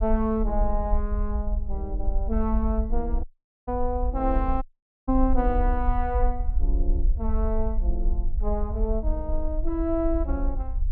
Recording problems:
rumble; below 52 Hz, SNR 0 dB
dropout; at 3 s and at 4.5 s

